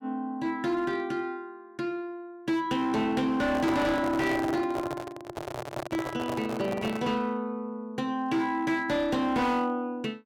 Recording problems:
distortion; hard clipping, signal-to-distortion ratio 10 dB
handling noise; from 3.5 to 7 s; peak 0 dB vs average level

